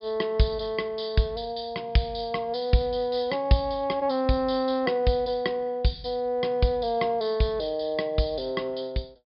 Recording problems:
treble cut off; nothing above 5.5 kHz

